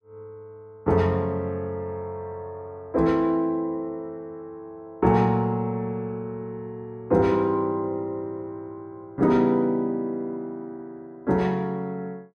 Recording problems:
none

